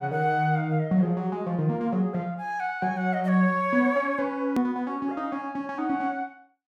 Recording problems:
edit click; at 4.5 s

